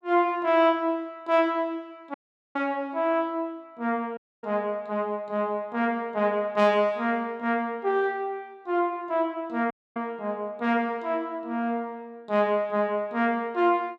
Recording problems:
dropout; at 2 s, at 4 s and at 9.5 s

